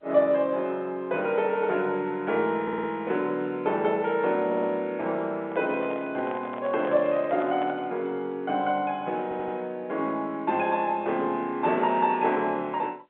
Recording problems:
telephone audio; 280 Hz to 3.5 kHz, G.711
stutter; at 2.5 s, at 4.5 s and at 9 s
handling noise; from 5.5 to 8 s; peak -7 dB vs average level

